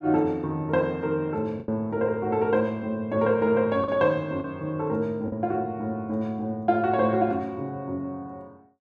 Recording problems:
packet loss; 2% of the sound replaced, filled with the last packet

